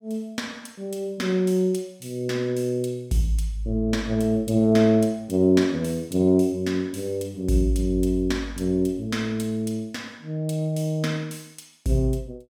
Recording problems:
none

